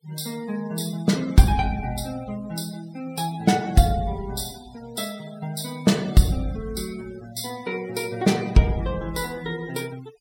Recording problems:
noise reduction artefacts; signal-to-artefact ratio 20 dB

